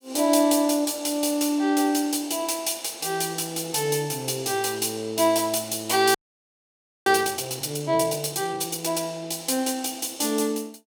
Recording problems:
audio freezing; at 6 s for 1 s

